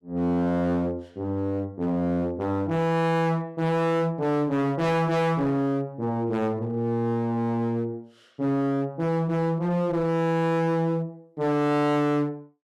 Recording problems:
distorted audio; hard clipping, uneven, signal-to-distortion ratio 7 dB

